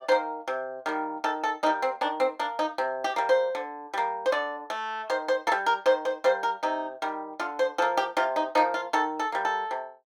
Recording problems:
none

